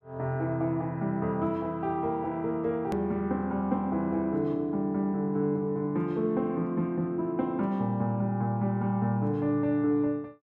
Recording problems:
edit click; at 3 s

